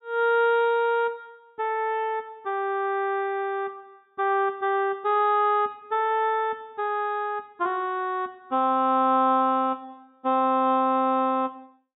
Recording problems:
treble cut off; nothing above 4 kHz

